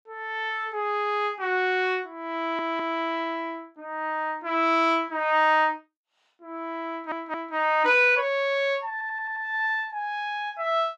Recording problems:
audio stuttering; at 2.5 s, at 7 s and at 9 s

